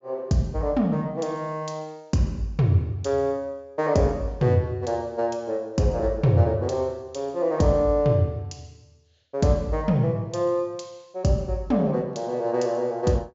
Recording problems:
treble missing; nothing above 7.3 kHz

